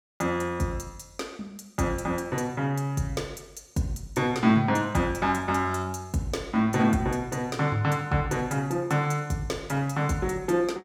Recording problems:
none

